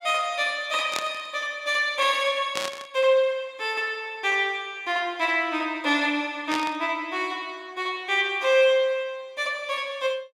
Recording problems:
burst of static; at 1 s, at 2.5 s and at 6.5 s; peak 0 dB vs average level

